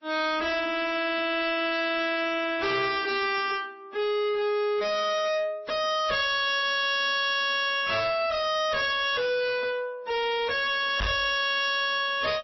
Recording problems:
lossy compression; AAC, then MP3, log-spectral distance 4 dB, nothing above 4.8 kHz
distorted audio; soft clipping, signal-to-distortion ratio 5 dB
microphone thump; at 11 s; peak +4 dB vs average level

